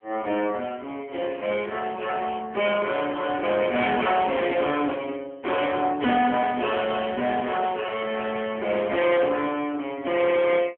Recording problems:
telephone audio; 220 Hz to 3.4 kHz, AMR-NB
distorted audio; hard clipping, signal-to-distortion ratio 11 dB

